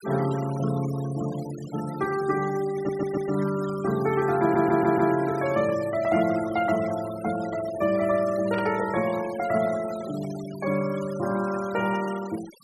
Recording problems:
noise reduction artefacts; signal-to-artefact ratio 16 dB
audio stuttering; at 3 s and at 4.5 s
static burst; at 8.5 s; peak -10 dB vs average level

